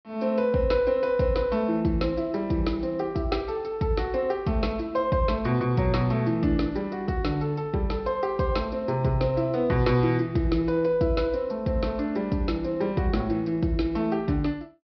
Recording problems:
treble cut off; nothing above 5.5 kHz

